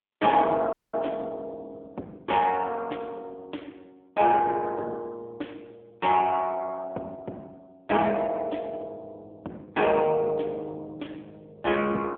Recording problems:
phone line; 240 Hz to 3.5 kHz, AMR-NB
dropout; at 0.5 s

